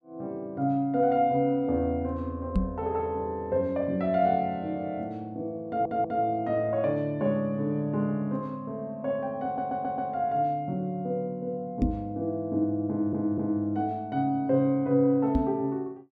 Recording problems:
microphone bump; at 2.5 s, at 12 s and at 15 s; peak +6 dB vs average level
stutter; at 5.5 s, at 9.5 s and at 13 s

